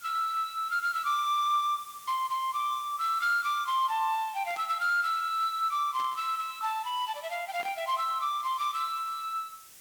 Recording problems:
background hiss; slope +1 dB per octave, SNR 20 dB
static burst; at 4.5 s, at 6 s and at 7.5 s; peak -13 dB vs average level

